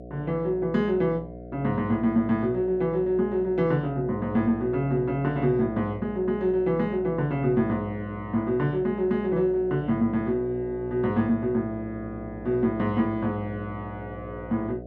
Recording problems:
electrical hum; 60 Hz, harmonics up to 720 Hz, SNR 14 dB

